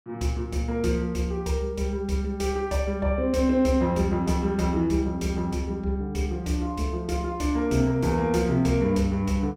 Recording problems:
none

